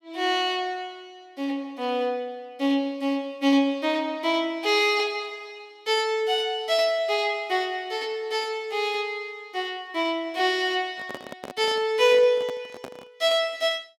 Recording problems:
microphone handling noise; from 11 to 13 s; peak -8 dB vs average level

